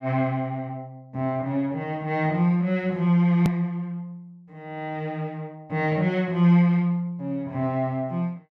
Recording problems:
hard cut with a click; at 3.5 s

